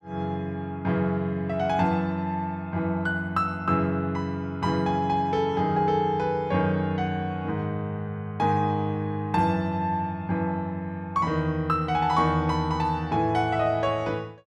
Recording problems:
none

